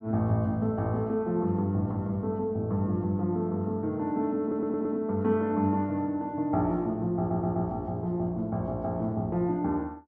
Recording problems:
stutter; at 4.5 s and at 7 s

